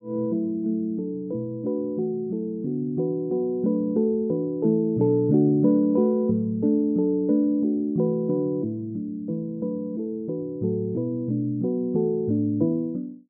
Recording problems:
none

